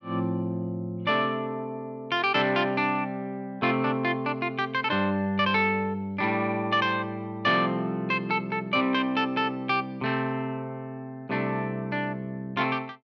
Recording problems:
none

